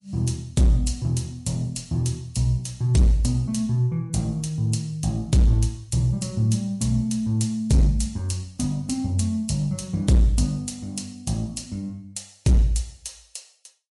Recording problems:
lossy codec; MP3, log-spectral distance 3 dB, nothing above 11 kHz
distorted audio; hard clipping, signal-to-distortion ratio 11 dB

